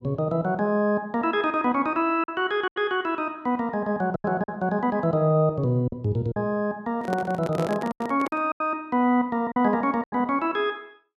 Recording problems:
lost packets; 6% of the sound replaced, filled with silence
microphone handling noise; from 7 to 8.5 s; peak -1 dB vs average level

